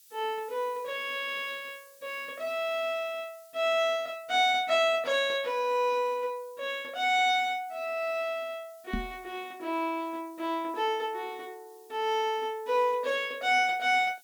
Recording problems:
background hiss; SNR 27 dB
microphone bump; at 9 s; peak 0 dB vs average level

